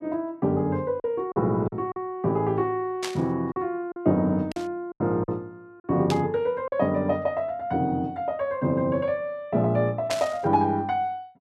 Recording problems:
packet loss; 4% of the sound replaced, filled with silence
static burst; 4 times, first at 3 s; peak -1 dB vs average level

